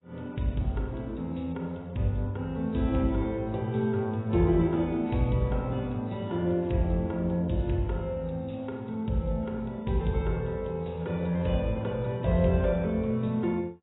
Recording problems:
lossy codec; AAC, log-spectral distance 2 dB, nothing above 3.8 kHz

